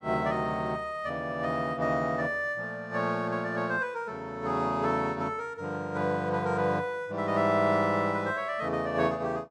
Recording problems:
none

